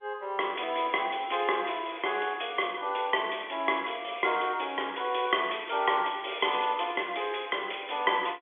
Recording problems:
phone line; 280 Hz to 3.5 kHz, G.711

